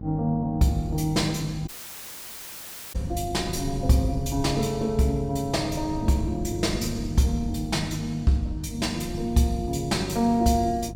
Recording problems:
hum; 50 Hz, harmonics up to 550 Hz, SNR 12 dB
wind on the microphone; below 110 Hz, SNR 15 dB
dropout; at 1.5 s for 1.5 s

